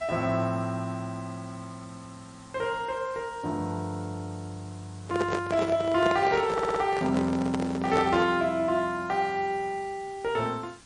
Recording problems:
lossy compression; MP3, log-spectral distance 5 dB, nothing above 8.7 kHz
background hiss; slope -2 dB per octave, SNR 23 dB
microphone handling noise; from 5 to 8.5 s; peak +2 dB vs average level
stutter; at 6.5 s

